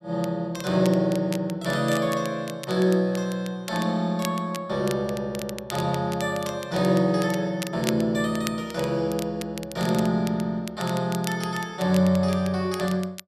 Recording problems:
crackling; vinyl, SNR 15 dB

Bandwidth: 13.5 kHz